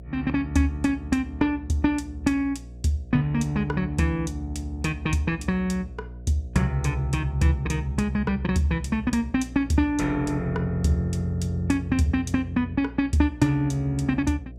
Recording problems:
electrical hum; 60 Hz, harmonics up to 660 Hz, SNR 16 dB

